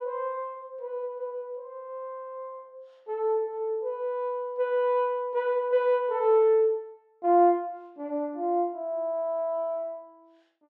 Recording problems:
none

